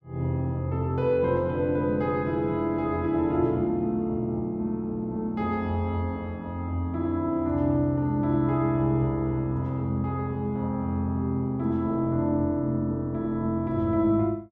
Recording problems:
none

